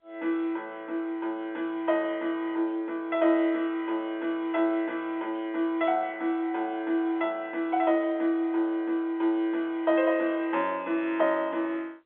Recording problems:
phone line; 280 Hz to 3.8 kHz, G.711

